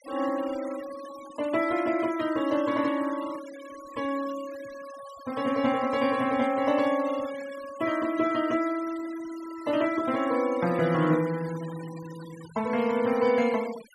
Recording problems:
denoising artefacts; signal-to-artefact ratio 17 dB

